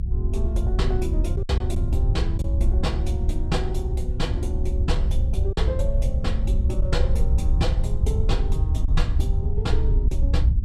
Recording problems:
low-frequency rumble; below 72 Hz, SNR -7 dB
packet loss; 2% of the sound replaced, filled with silence

